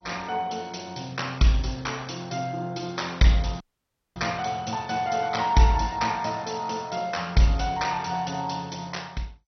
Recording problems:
codec artefacts; MP2, log-spectral distance 9 dB, nothing above 6 kHz
dropout; at 3.5 s for 0.5 s

